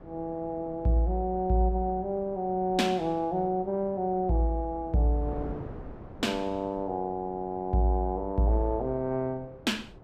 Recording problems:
wind on the microphone; below 480 Hz, SNR 18 dB

